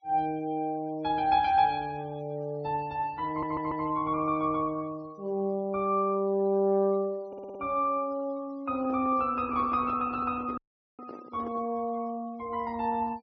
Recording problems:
treble cut off; nothing above 6 kHz
denoising artefacts; signal-to-artefact ratio 27 dB
stutter; at 3.5 s and at 7.5 s
handling noise; from 8.5 to 12 s; peak -9 dB vs average level
audio cutting out; at 11 s

